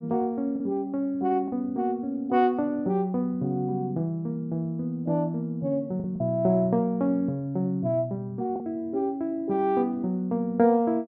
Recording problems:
lost packets; 1.8% of the sound replaced, filled with the last packet

